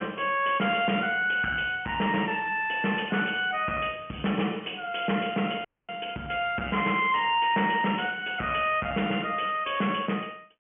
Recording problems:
phone line; 130 Hz to 3.2 kHz, G.726
distortion; hard clipping, signal-to-distortion ratio 11 dB
dropout; at 5.5 s

